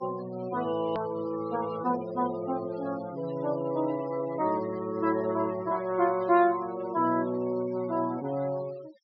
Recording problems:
low-pass filter; nothing above 5.5 kHz
noise reduction artefacts; signal-to-artefact ratio 17 dB
edit click; at 1 s

